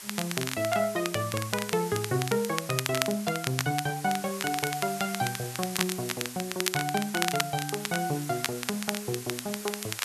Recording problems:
hiss; slope +1 dB per octave, SNR 9 dB
crackle; vinyl, SNR 4 dB

